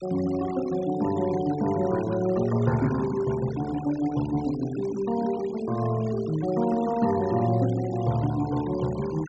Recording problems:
low-pass filter; nothing above 8 kHz
noise reduction artefacts; signal-to-artefact ratio 16 dB

